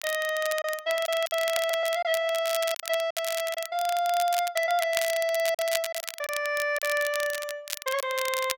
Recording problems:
crackle; vinyl, SNR 8 dB
packet loss; 5% of the sound replaced, filled with silence
audio stuttering; at 1.5 s

